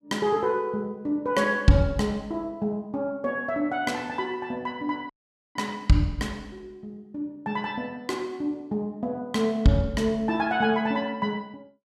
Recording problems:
dropout; at 5 s

